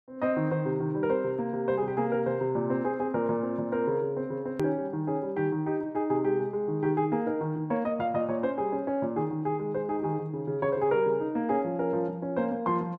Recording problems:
hard cut with a click; at 4.5 s

